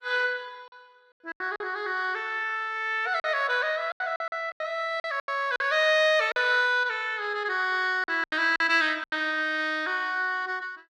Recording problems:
lossy compression; Opus, log-spectral distance 2 dB, nothing above 12 kHz
lost packets; 9% of the sound replaced, filled with silence

